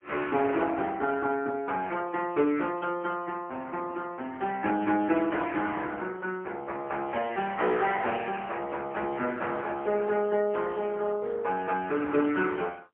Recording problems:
telephone audio; 240 Hz to 3.6 kHz, AMR-NB, then MP3

